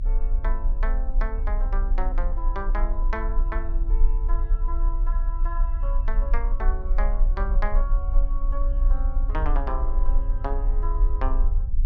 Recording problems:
low-frequency rumble; below 36 Hz, strongest tone 30 Hz, SNR -9 dB

